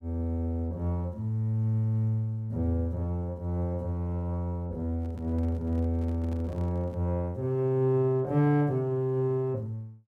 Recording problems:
microphone handling noise; from 5 to 7 s; peak -12 dB vs average level

